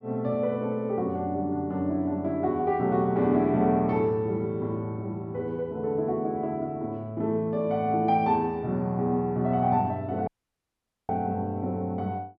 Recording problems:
audio cutting out; at 10 s for 1 s

